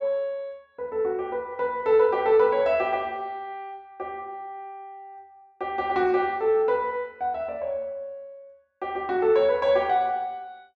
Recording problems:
none

